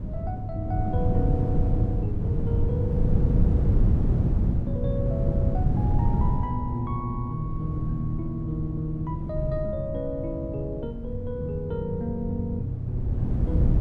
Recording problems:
wind noise; below 150 Hz, SNR -3 dB

